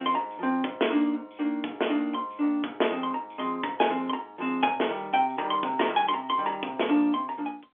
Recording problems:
phone line; 240 Hz to 3.6 kHz, G.711

